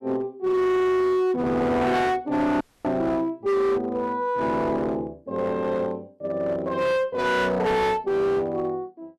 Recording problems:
distorted audio; hard clipping, uneven, signal-to-distortion ratio 7 dB
dropout; at 2.5 s

